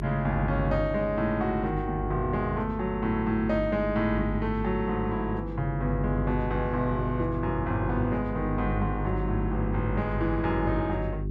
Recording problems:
electrical hum; 50 Hz, harmonics up to 400 Hz, SNR 5 dB

